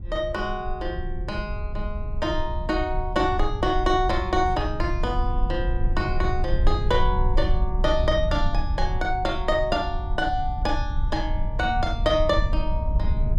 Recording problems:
rumble; below 66 Hz, SNR 2 dB

